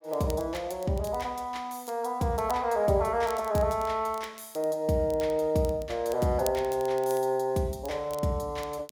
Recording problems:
crackling; vinyl, SNR 19 dB

